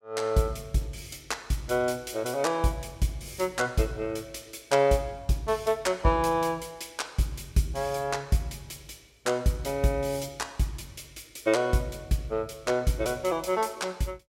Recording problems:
none

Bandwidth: 16 kHz